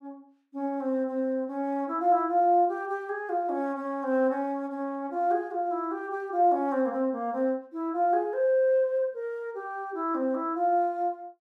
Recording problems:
none

